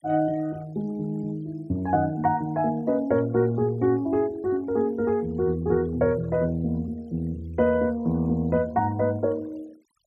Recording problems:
denoising artefacts; signal-to-artefact ratio 28 dB

